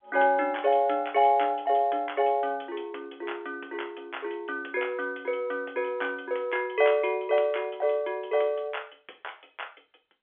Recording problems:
phone line; 320 Hz to 3.4 kHz, G.711

